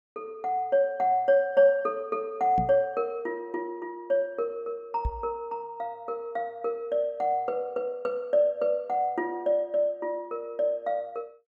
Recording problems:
microphone bump; at 2.5 s and at 5 s; peak +1 dB vs average level

